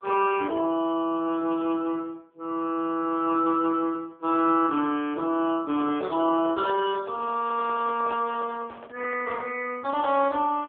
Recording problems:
phone line; 240 Hz to 3.2 kHz, AMR-NB
handling noise; from 5.5 to 9.5 s; peak -3 dB vs average level

